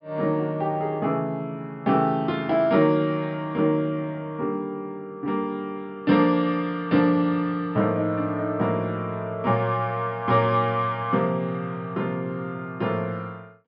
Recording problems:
treble missing; nothing above 5.5 kHz

